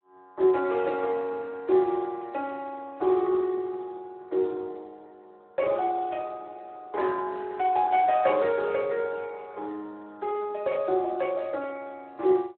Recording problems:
phone line; 280 Hz to 3.4 kHz, Speex

